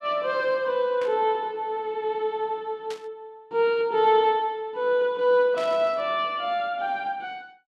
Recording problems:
static burst; at 1 s, at 3 s and at 5.5 s; peak -11 dB vs average level

